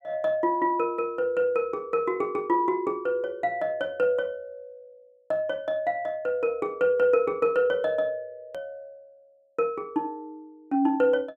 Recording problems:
hard cut with a click; at 8.5 s

